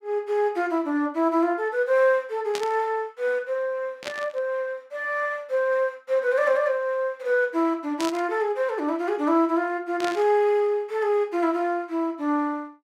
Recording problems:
static burst; 4 times, first at 2.5 s; peak -4 dB vs average level

